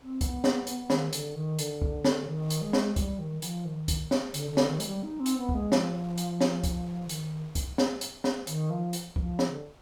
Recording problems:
wind on the microphone; below 1.6 kHz, SNR 25 dB

